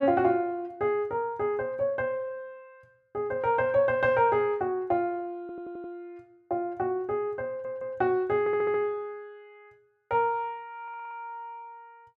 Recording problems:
stutter; 4 times, first at 5.5 s

